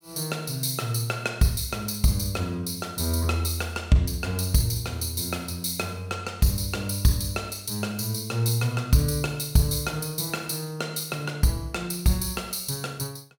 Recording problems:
none

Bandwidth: 17.5 kHz